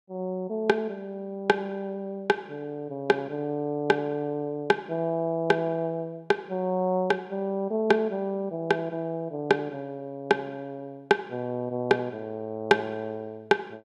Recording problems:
none

